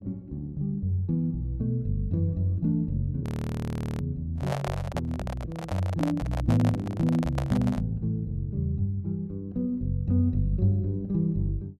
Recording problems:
audio freezing; at 3 s for 1 s
microphone handling noise; from 4.5 to 8 s; peak 0 dB vs average level

